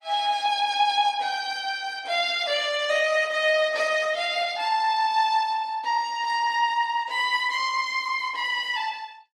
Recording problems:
lossy codec; Opus, log-spectral distance 4 dB, nothing above 18.9 kHz

